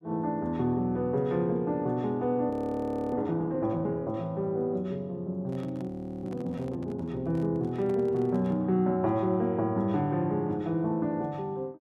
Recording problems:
audio freezing; at 2.5 s for 0.5 s and at 6 s
handling noise; from 5.5 to 8.5 s; peak -12 dB vs average level

